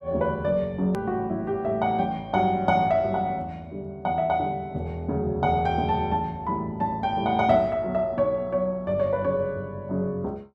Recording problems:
edit click; at 1 s

